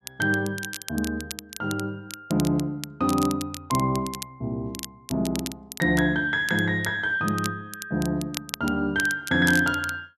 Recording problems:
crackling; vinyl, SNR 12 dB

